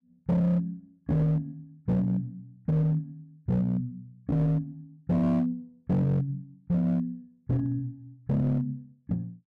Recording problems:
distorted audio; hard clipping, signal-to-distortion ratio 10 dB

